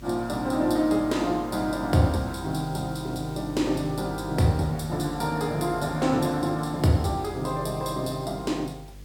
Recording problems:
mains hum; 50 Hz, harmonics up to 550 Hz, SNR 18 dB
hiss; slope -1 dB per octave, SNR 25 dB

